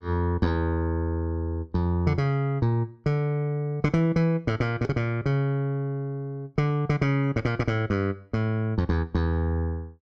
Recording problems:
none

